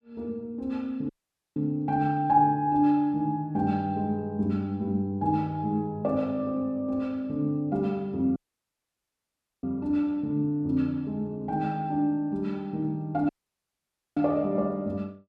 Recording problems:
dropout; at 1 s, at 8.5 s for 1.5 s and at 13 s for 1 s

